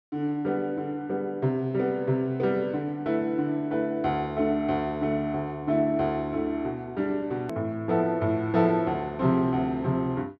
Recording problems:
edit click; at 7.5 s

